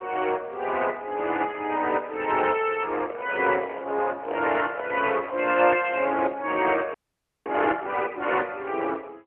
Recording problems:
phone line; 300 Hz to 3.1 kHz, AMR-NB
microphone handling noise; from 3 to 5.5 s; peak -5 dB vs average level
frozen audio; at 7 s for 0.5 s

